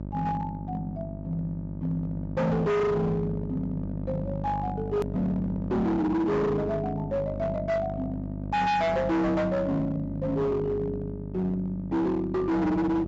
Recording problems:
low-pass filter; nothing above 8 kHz
distorted audio; hard clipping, signal-to-distortion ratio 7 dB
mains hum; 50 Hz, harmonics up to 900 Hz, SNR 8 dB
edit click; at 5 s

